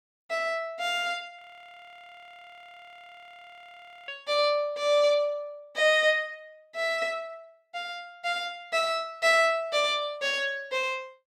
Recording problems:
frozen audio; at 1.5 s for 2.5 s

